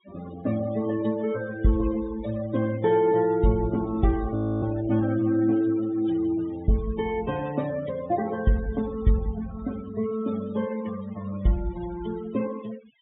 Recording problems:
treble cut off; nothing above 4 kHz
noise reduction artefacts; signal-to-artefact ratio 18 dB
frozen audio; at 4.5 s

